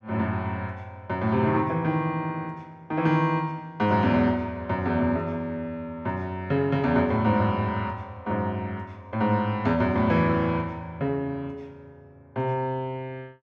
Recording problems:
none

